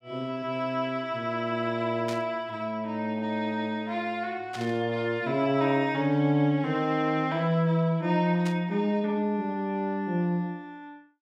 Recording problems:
burst of static; at 2 s, at 4.5 s and at 8.5 s; peak -7 dB vs average level

